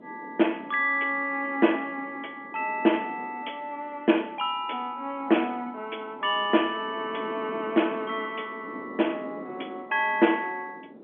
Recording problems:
telephone audio; 220 Hz to 3.4 kHz, G.711
wind on the microphone; below 450 Hz, SNR 17 dB

